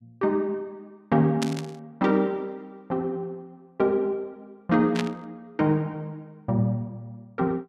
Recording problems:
static burst; at 1.5 s and at 5 s; peak 0 dB vs average level

